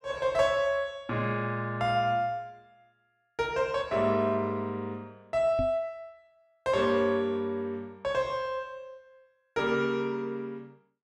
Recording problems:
microphone bump; at 5.5 s; peak -2 dB vs average level

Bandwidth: 12.5 kHz